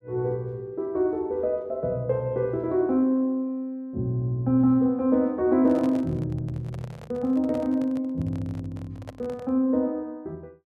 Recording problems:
handling noise; from 5.5 to 9.5 s; peak -8 dB vs average level

